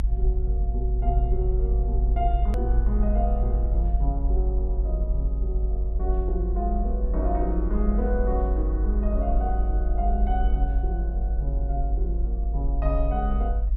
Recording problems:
rumble; below 52 Hz, strongest tone 50 Hz, SNR -6 dB
hard cut with a click; at 2.5 s

